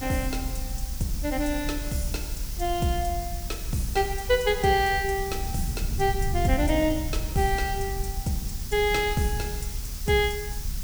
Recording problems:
hiss; SNR 10 dB
rumble; below 76 Hz, SNR 7 dB

